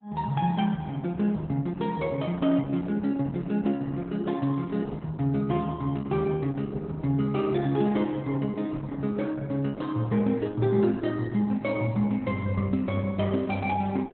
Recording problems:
lossy compression; Opus, log-spectral distance 3 dB, nothing above 3.6 kHz

